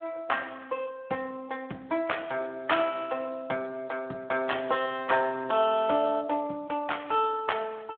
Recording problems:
phone line; 150 Hz to 3.5 kHz, Speex

